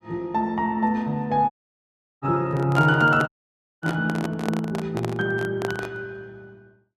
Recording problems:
audio cutting out; at 1.5 s for 0.5 s and at 3.5 s for 0.5 s
microphone handling noise; from 2.5 to 6 s; peak -1 dB vs average level

